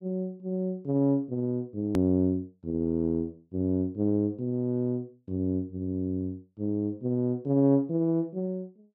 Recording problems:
hard cut with a click; at 2 s

